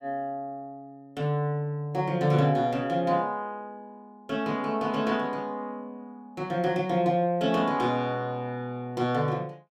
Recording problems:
none

